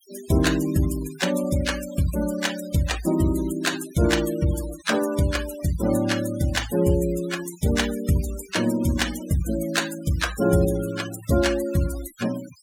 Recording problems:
denoising artefacts; signal-to-artefact ratio 13 dB

